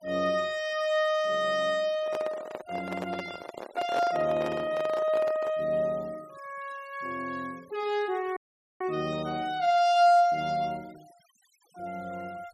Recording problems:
noise reduction artefacts; signal-to-artefact ratio 24 dB
microphone handling noise; from 2 to 5.5 s; peak -3 dB vs average level
dropout; at 8.5 s

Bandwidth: 14.5 kHz